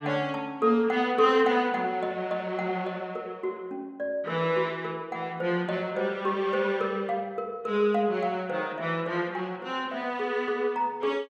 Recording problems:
none

